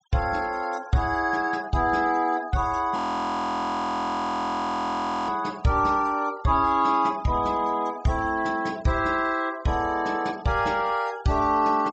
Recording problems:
treble cut off; nothing above 8 kHz
denoising artefacts; signal-to-artefact ratio 22 dB
frozen audio; at 3 s for 2.5 s

